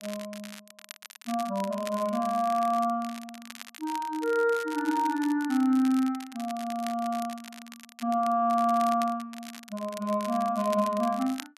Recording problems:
crackle; vinyl, SNR 17 dB

